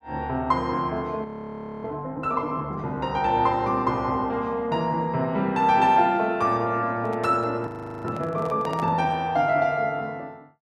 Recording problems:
frozen audio; at 1.5 s for 0.5 s and at 7.5 s
handling noise; from 7 to 9 s; peak -7 dB vs average level

